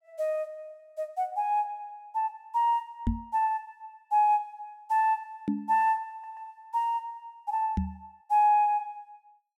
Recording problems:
microphone thump; at 3 s, at 5.5 s and at 8 s; peak +3 dB vs average level
audio stuttering; at 6 s

